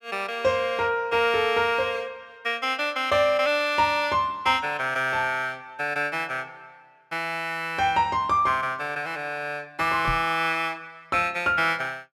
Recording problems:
microphone thump; at 10 s; peak -4 dB vs average level

